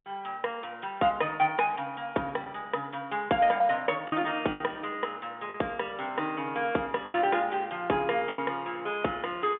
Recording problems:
telephone audio; 190 Hz to 3.6 kHz, G.711
lost packets; 4% of the sound replaced, filled with the last packet

